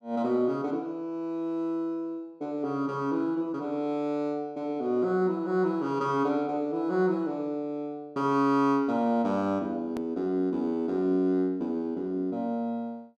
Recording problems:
hard cut with a click; at 10 s

